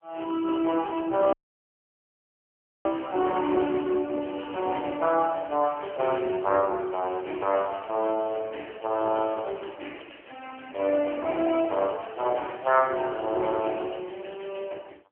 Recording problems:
telephone audio; 260 Hz to 3.1 kHz, AMR-NB
audio cutting out; at 1.5 s for 1.5 s

